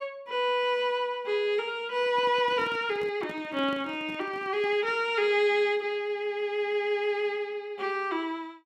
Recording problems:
handling noise; from 2 to 5 s; peak -10 dB vs average level

